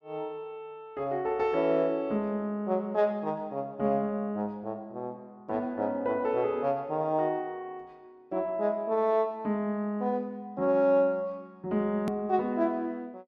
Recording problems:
hard cut with a click; at 12 s

